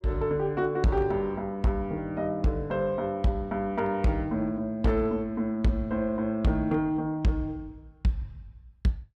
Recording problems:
distorted audio; hard clipping, uneven, signal-to-distortion ratio 11 dB

